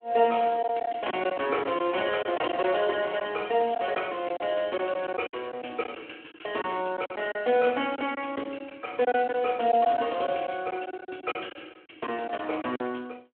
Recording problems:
phone line; 240 Hz to 3.3 kHz, Speex
packet loss; 8% of the sound replaced, filled with silence

